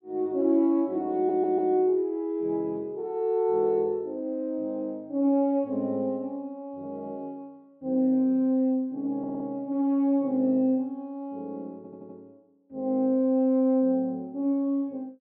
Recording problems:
stutter; at 1 s, at 9 s and at 12 s

